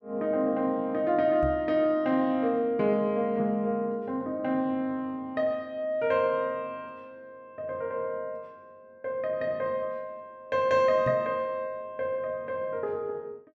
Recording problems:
knock on the microphone; at 1.5 s and at 11 s; peak -2 dB vs average level

